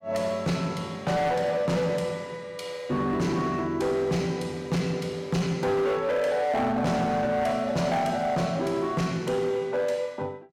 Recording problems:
distorted audio; hard clipping, signal-to-distortion ratio 10 dB

